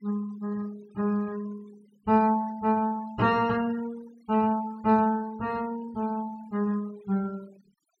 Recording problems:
noise reduction artefacts; signal-to-artefact ratio 24 dB

